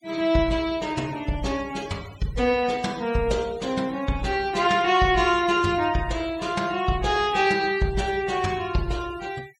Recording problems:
denoising artefacts; signal-to-artefact ratio 19 dB

